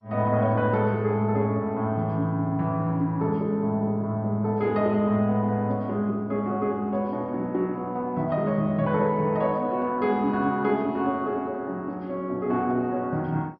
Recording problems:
lossy codec; MP2, log-spectral distance 2 dB, nothing above 4.9 kHz

